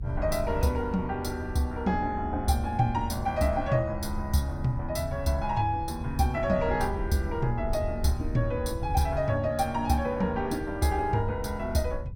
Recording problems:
rumble; below 82 Hz, SNR 9 dB

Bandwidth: 17 kHz